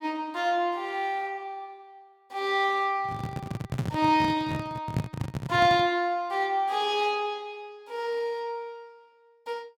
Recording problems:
handling noise; from 3 to 6 s; peak +3 dB vs average level

